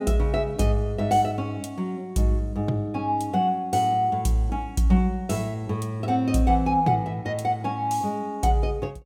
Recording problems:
none

